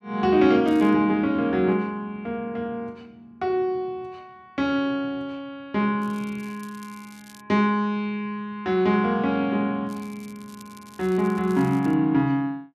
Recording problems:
crackling; at 0.5 s, from 6 to 7.5 s and from 10 to 12 s; loose cable, SNR 27 dB

